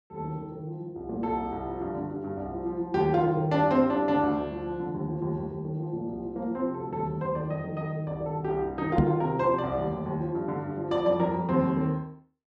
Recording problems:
microphone thump; at 9 s; peak +8 dB vs average level

